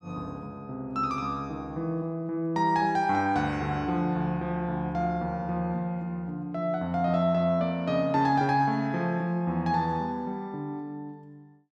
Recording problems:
none

